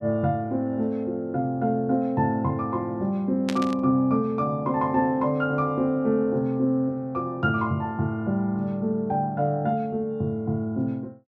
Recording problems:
static burst; at 3.5 s; peak -3 dB vs average level

